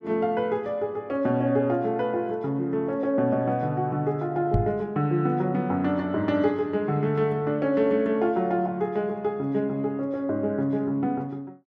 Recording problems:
knock on the microphone; at 4.5 s; peak +6 dB vs average level

